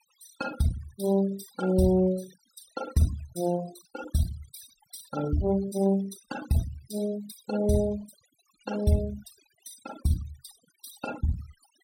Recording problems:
denoising artefacts; signal-to-artefact ratio 15 dB

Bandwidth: 16 kHz